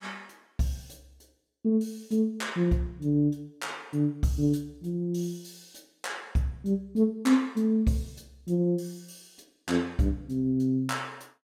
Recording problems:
none

